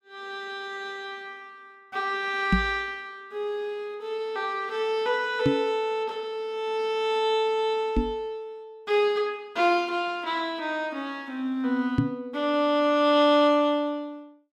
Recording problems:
microphone thump; 4 times, first at 2.5 s; peak +7 dB vs average level

